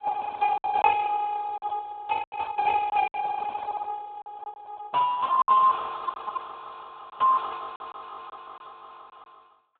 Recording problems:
telephone audio; 990 Hz to 2.4 kHz, Speex
lost packets; 6% of the sound replaced, filled with silence

